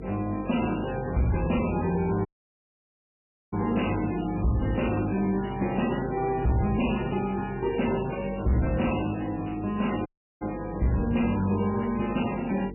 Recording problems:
codec artefacts; MP3, log-spectral distance 7 dB, nothing above 2.9 kHz
distorted audio; soft clipping, signal-to-distortion ratio 8 dB
electrical hum; 50 Hz, harmonics up to 450 Hz, SNR 13 dB
dropout; at 2.5 s for 1.5 s and at 10 s

